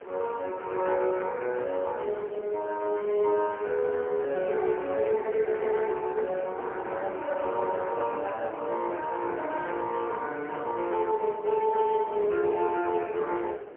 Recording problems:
telephone audio; 320 Hz to 3.1 kHz, AMR-NB, then MP3
wind on the microphone; below 770 Hz, SNR 16 dB

